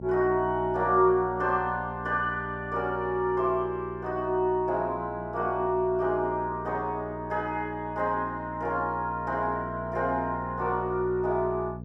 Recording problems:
hum; 60 Hz, harmonics up to 660 Hz, SNR 12 dB

